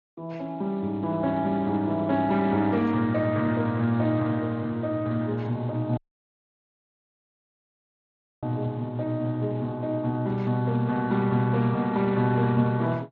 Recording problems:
codec artefacts; AAC, then Speex, log-spectral distance 2 dB
dropout; at 6 s for 2.5 s

